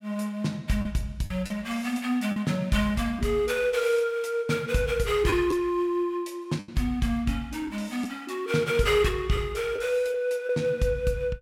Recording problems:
lost packets; 3% of the sound replaced, filled with the last packet

